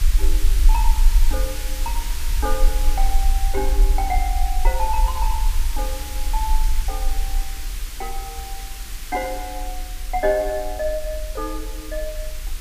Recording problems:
background hiss; SNR 6 dB
low-frequency rumble; below 44 Hz, strongest tone 22 Hz, SNR -4 dB

